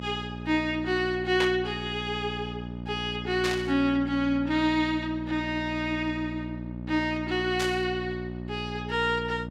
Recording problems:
hum; 60 Hz, harmonics up to 960 Hz, SNR 9 dB
static burst; at 1.5 s, at 3.5 s and at 7.5 s; peak +2 dB vs average level

